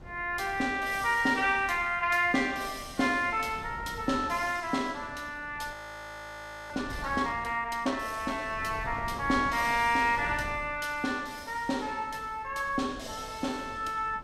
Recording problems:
wind noise; below 380 Hz, SNR 18 dB
frozen audio; at 5.5 s for 1 s

